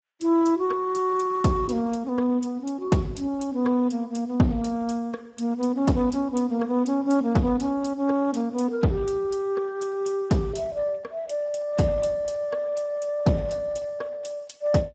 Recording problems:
lossy compression; Speex, log-spectral distance 3 dB, nothing above 7.8 kHz

